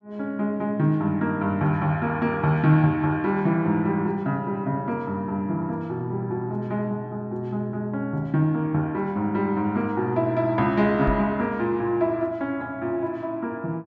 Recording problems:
microphone bump; at 11 s; peak -1 dB vs average level

